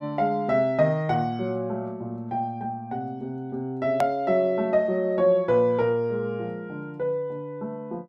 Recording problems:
click at an edit; at 4 s

